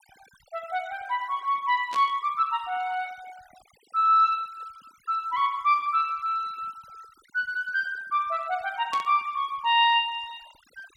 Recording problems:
denoising artefacts; signal-to-artefact ratio 27 dB
burst of static; at 2 s and at 9 s; peak -7 dB vs average level

